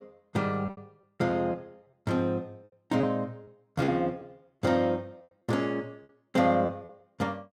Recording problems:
lost packets; 6% of the sound replaced, filled with repeated pitch periods

